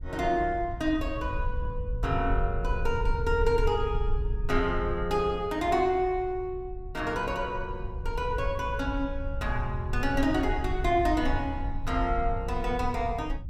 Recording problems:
rumble; below 72 Hz, SNR 6 dB

